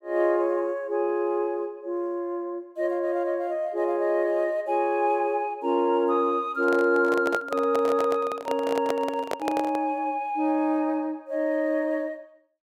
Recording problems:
handling noise; from 6.5 to 10 s; peak +1 dB vs average level

